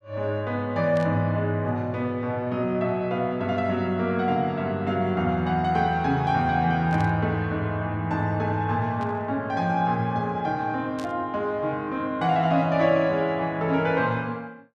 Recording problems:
static burst; 4 times, first at 1 s; peak -13 dB vs average level

